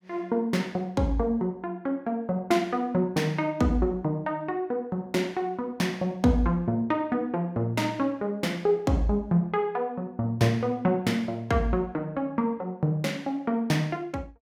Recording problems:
none

